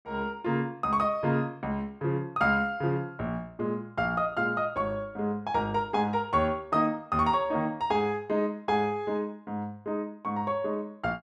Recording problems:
none

